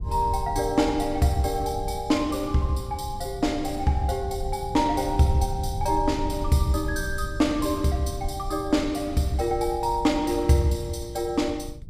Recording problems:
rumble; below 96 Hz, SNR 11 dB

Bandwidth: 15 kHz